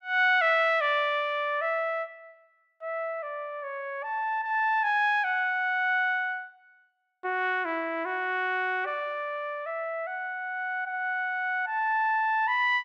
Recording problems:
none

